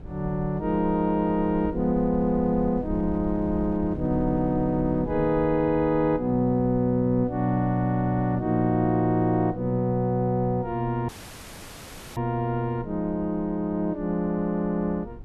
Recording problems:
wind noise; below 120 Hz, SNR 16 dB
dropout; at 11 s for 1 s

